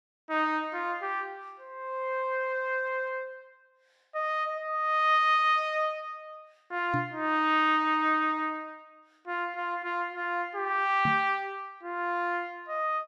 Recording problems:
microphone thump; at 7 s and at 11 s; peak -1 dB vs average level

